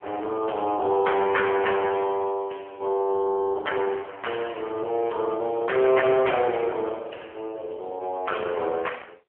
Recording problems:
phone line; 340 Hz to 3.3 kHz, AMR-NB

